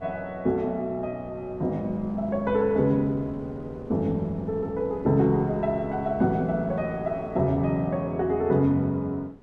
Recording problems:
wind noise; below 440 Hz, SNR 19 dB

